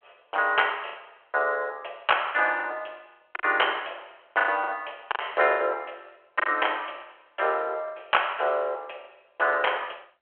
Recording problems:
phone line; 320 Hz to 3.3 kHz, G.726
lost packets; 9% of the sound replaced, filled with the last packet

